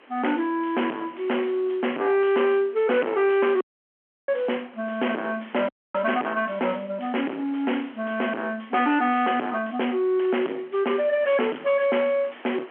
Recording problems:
telephone audio; 220 Hz to 3.3 kHz, G.711
distortion; soft clipping, signal-to-distortion ratio 4 dB
hiss; SNR 24 dB
dropout; at 3.5 s for 0.5 s and at 5.5 s

